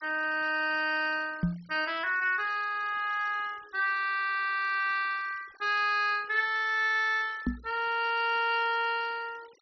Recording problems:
treble cut off; nothing above 5.8 kHz
noise reduction artefacts; signal-to-artefact ratio 24 dB
knock on the microphone; at 1.5 s and at 7.5 s; peak +4 dB vs average level
audio stuttering; at 4 s

